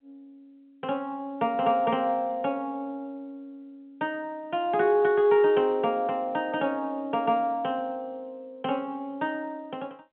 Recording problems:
telephone audio; 130 Hz to 3.7 kHz, G.711

